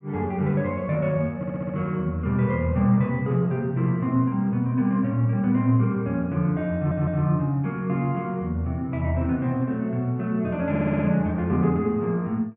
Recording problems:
audio stuttering; at 1.5 s, at 7 s and at 11 s

